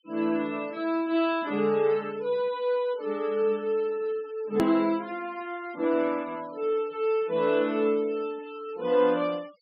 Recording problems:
treble missing; nothing above 5.5 kHz
denoising artefacts; signal-to-artefact ratio 24 dB
click at an edit; at 4.5 s

